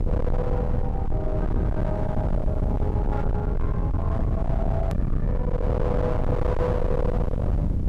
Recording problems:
distortion; hard clipping, signal-to-distortion ratio 6 dB
hum; 50 Hz, harmonics up to 350 Hz, SNR 18 dB
hiss; slope -5 dB per octave, SNR 30 dB
low-frequency rumble; below 150 Hz, SNR -4 dB
hard cut with a click; at 5 s

